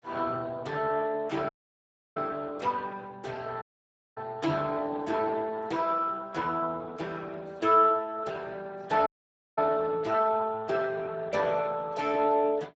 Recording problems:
lossy compression; Speex, log-spectral distance 4 dB
audio cutting out; at 1.5 s for 0.5 s, at 3.5 s for 0.5 s and at 9 s for 0.5 s

